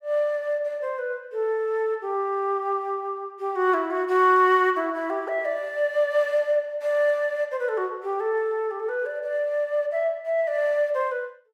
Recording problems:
none

